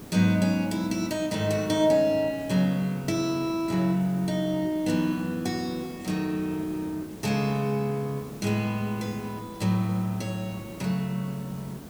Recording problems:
hiss; slope -6 dB per octave, SNR 16 dB

